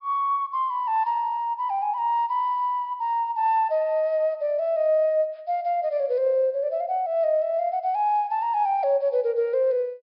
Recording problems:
treble cut off; nothing above 5.5 kHz

